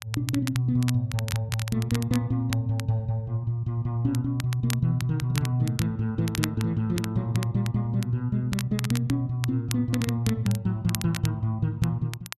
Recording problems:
crackling; vinyl, SNR 12 dB

